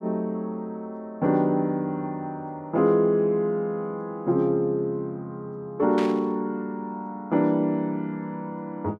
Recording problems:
burst of static; at 6 s; peak -5 dB vs average level

